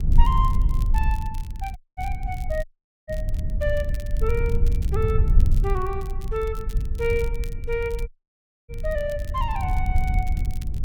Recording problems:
rumble; below 70 Hz, SNR -4 dB
crackle; vinyl, SNR 19 dB
audio cutting out; at 2 s, at 2.5 s and at 8 s for 0.5 s

